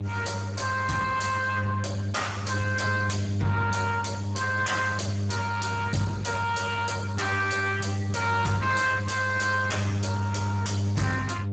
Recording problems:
lossy codec; Speex, log-spectral distance 6 dB, nothing above 7.8 kHz
distortion; soft clipping, signal-to-distortion ratio 10 dB
hum; 50 Hz, harmonics up to 600 Hz, SNR 3 dB

